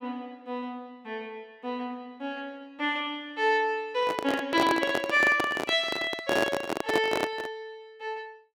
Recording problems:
handling noise; from 4 to 7.5 s; peak +4 dB vs average level

